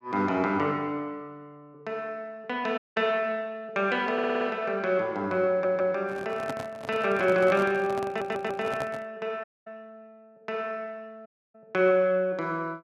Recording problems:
dropout; at 3 s, at 9.5 s and at 11 s
stutter; at 4 s, at 5.5 s and at 8 s
handling noise; from 6 to 9 s; peak -3 dB vs average level

